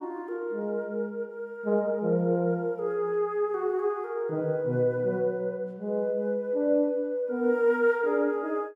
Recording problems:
none

